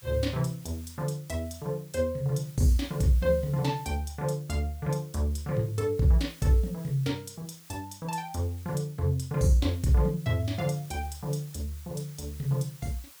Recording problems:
hiss; slope +2 dB per octave, SNR 22 dB

